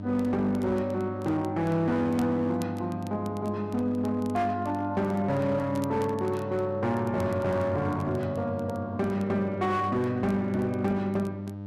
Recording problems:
distortion; hard clipping, uneven, signal-to-distortion ratio 12 dB
electrical hum; 50 Hz, harmonics up to 1 kHz, SNR 9 dB
crackling; vinyl, SNR 27 dB

